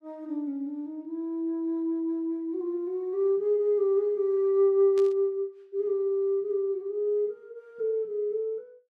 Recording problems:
burst of static; at 5 s; peak -13 dB vs average level

